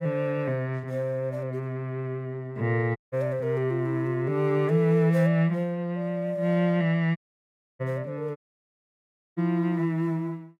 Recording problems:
audio cutting out; at 3 s, at 7 s for 0.5 s and at 8.5 s for 1 s

